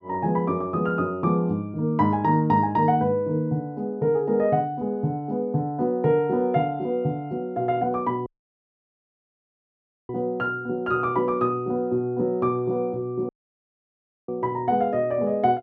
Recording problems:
audio cutting out; at 8.5 s for 2 s and at 13 s for 1 s

